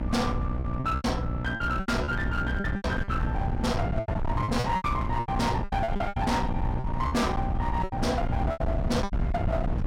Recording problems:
distortion; hard clipping, signal-to-distortion ratio 8 dB
electrical hum; 60 Hz, harmonics up to 900 Hz, SNR 4 dB
low-frequency rumble; below 180 Hz, SNR 3 dB
lost packets; 14% of the sound replaced, filled with repeated pitch periods

